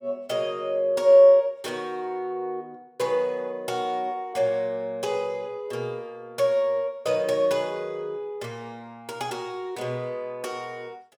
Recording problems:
none

